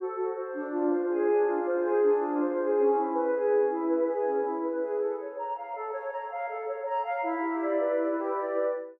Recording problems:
none

